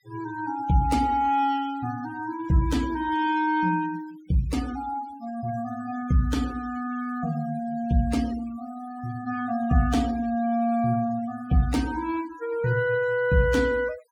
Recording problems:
noise reduction artefacts; signal-to-artefact ratio 19 dB

